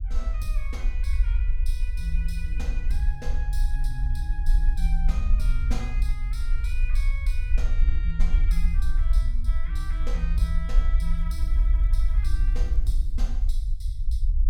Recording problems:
rumble; below 48 Hz, SNR -12 dB
crackle; from 11 to 14 s; loose cable, SNR 28 dB

